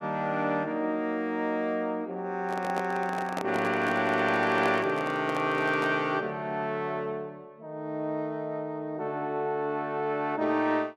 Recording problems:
microphone handling noise; from 2.5 to 6 s; peak 0 dB vs average level

